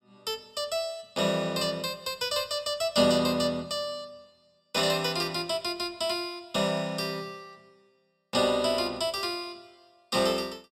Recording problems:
none

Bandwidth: 16 kHz